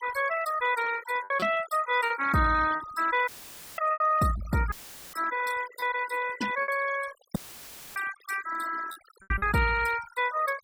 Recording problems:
denoising artefacts; signal-to-artefact ratio 14 dB
lost packets; 6% of the sound replaced, filled with repeated pitch periods
dropout; at 3.5 s for 0.5 s, at 4.5 s and at 7.5 s for 0.5 s; filled with static

